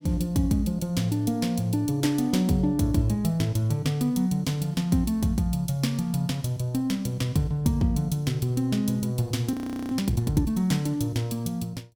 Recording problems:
frozen audio; at 9.5 s

